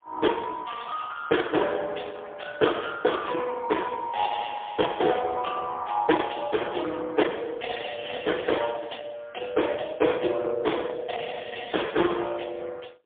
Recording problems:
phone line; 260 Hz to 3.5 kHz, AMR-NB, then MP3

